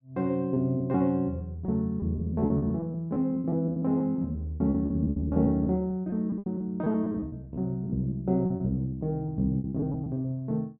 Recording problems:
packet loss; 16% of the sound replaced, filled with repeated pitch periods

